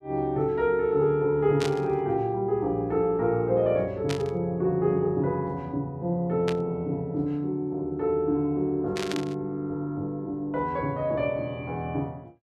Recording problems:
static burst; 4 times, first at 1.5 s; peak -2 dB vs average level

